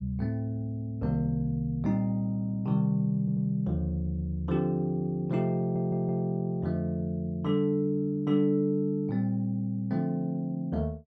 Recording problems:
audio stuttering; at 3 s and at 5.5 s

